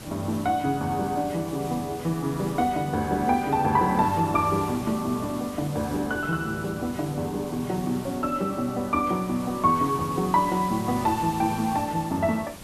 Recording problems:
background hiss; slope -3 dB per octave, SNR 15 dB

